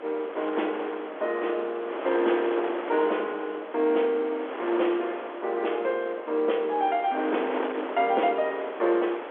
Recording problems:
telephone audio; 280 Hz to 3.5 kHz, G.711
wind noise; below 1.3 kHz, SNR 8 dB

